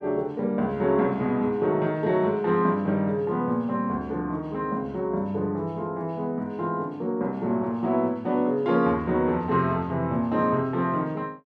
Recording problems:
none

